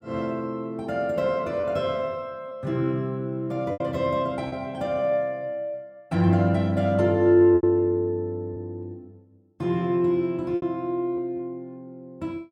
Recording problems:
packet loss; 3% of the sound replaced, filled with repeated pitch periods

